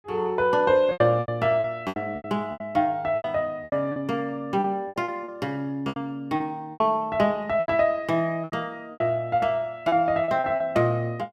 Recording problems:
lost packets; 13% of the sound replaced, filled with repeated pitch periods

